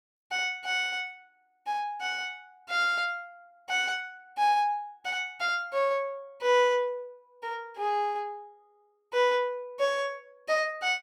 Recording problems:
none

